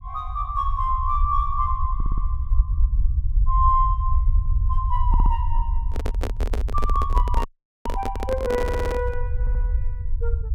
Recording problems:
rumble; below 62 Hz, SNR -1 dB
audio stuttering; 4 times, first at 2 s
microphone handling noise; from 6 to 9 s; peak +2 dB vs average level
audio cutting out; at 7.5 s

